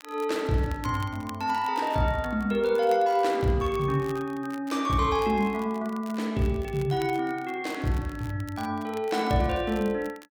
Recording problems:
crackling; vinyl, SNR 22 dB

